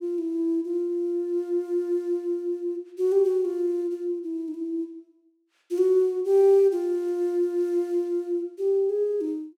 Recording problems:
none

